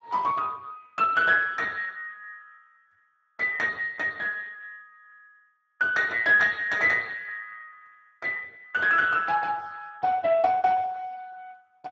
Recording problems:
lossy compression; Speex, log-spectral distance 3 dB

